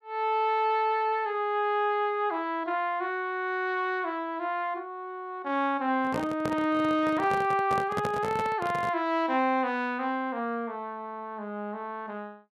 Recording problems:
microphone handling noise; from 6 to 9 s; peak 0 dB vs average level

